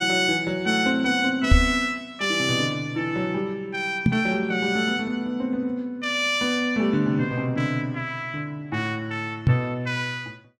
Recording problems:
microphone thump; at 1.5 s, at 4 s and at 9.5 s; peak +9 dB vs average level

